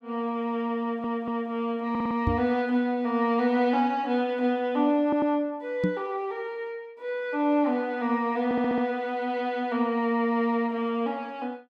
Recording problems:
audio stuttering; 4 times, first at 1 s
microphone thump; at 2.5 s and at 6 s; peak +4 dB vs average level

